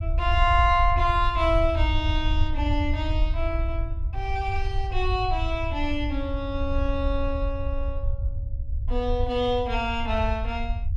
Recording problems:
low-frequency rumble; below 74 Hz, SNR 2 dB

